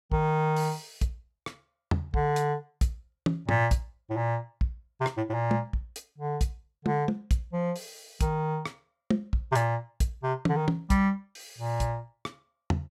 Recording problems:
none

